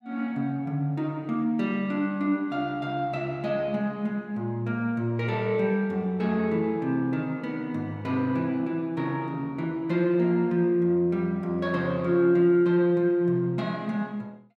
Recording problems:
none

